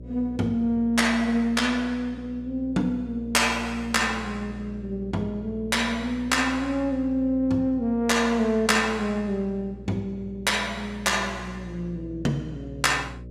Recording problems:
hum; 60 Hz, harmonics up to 600 Hz, SNR 16 dB

